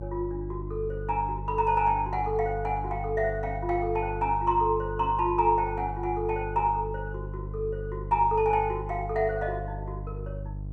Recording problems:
electrical hum; 50 Hz, harmonics up to 450 Hz, SNR 9 dB

